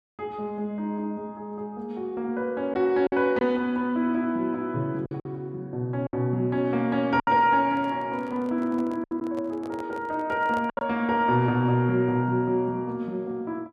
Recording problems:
lost packets; 4% of the sound replaced, filled with silence
microphone handling noise; from 7.5 to 11 s; peak -8 dB vs average level

